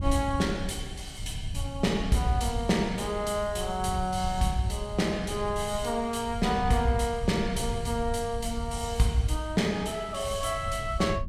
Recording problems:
wind on the microphone; below 100 Hz, SNR 9 dB

